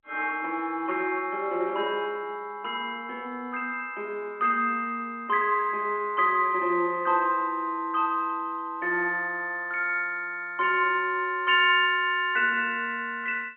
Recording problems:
phone line; 260 Hz to 3.2 kHz, G.711

